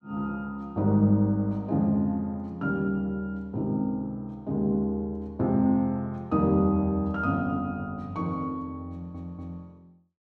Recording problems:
audio stuttering; at 9 s

